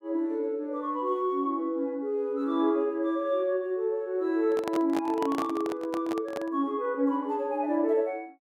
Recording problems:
handling noise; from 4.5 to 6.5 s; peak -1 dB vs average level

